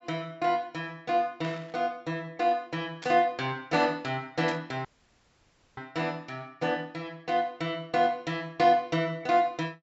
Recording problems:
treble missing; nothing above 7.7 kHz
static burst; at 1.5 s, at 3 s and at 4.5 s; peak -8 dB vs average level
dropout; at 5 s for 1 s

